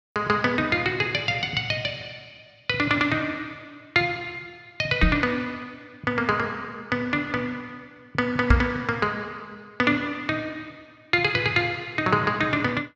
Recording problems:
knock on the microphone; at 5 s and at 8.5 s; peak +8 dB vs average level

